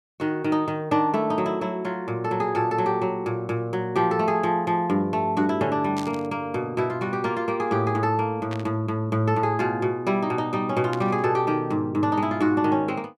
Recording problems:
static burst; at 6 s, at 8.5 s and at 11 s; peak -7 dB vs average level

